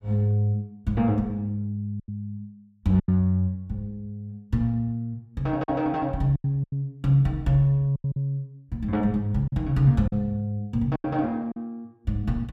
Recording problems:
lost packets; 6% of the sound replaced, filled with silence

